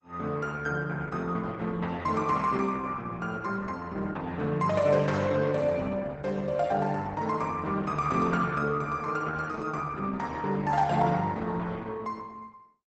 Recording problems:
codec artefacts; Opus, log-spectral distance 3 dB, nothing above 8 kHz

